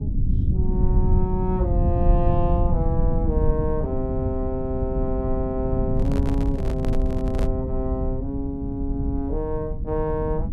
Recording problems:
low-frequency rumble; below 110 Hz, SNR -2 dB
microphone handling noise; from 6 to 7.5 s; peak -2 dB vs average level

